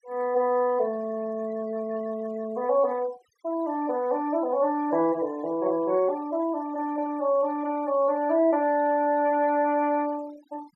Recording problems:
denoising artefacts; signal-to-artefact ratio 25 dB

